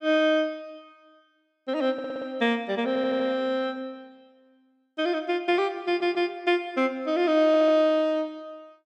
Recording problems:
audio stuttering; 4 times, first at 2 s

